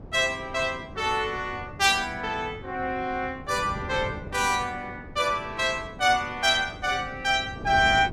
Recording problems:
wind on the microphone; below 320 Hz, SNR 15 dB

